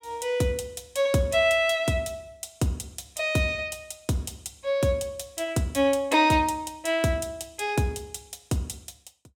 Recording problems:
none

